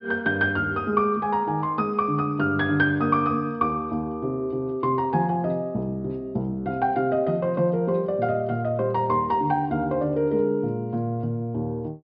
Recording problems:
treble missing; nothing above 5.1 kHz

